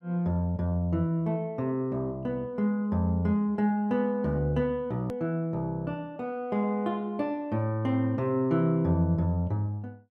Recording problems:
edit click; at 5 s

